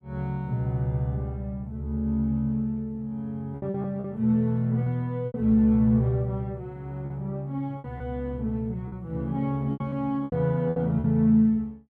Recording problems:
packet loss; 6% of the sound replaced, filled with repeated pitch periods

